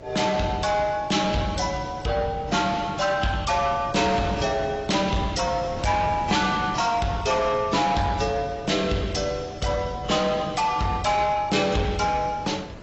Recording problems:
lossy compression; AAC, log-spectral distance 4 dB, nothing above 7.8 kHz
distortion; soft clipping, signal-to-distortion ratio 11 dB
electrical hum; 60 Hz, harmonics up to 660 Hz, SNR 24 dB
wind on the microphone; below 920 Hz, SNR 16 dB

